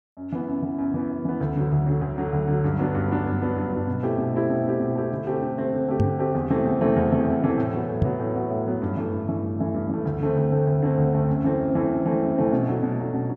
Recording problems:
microphone thump; at 6 s and at 8 s; peak +5 dB vs average level

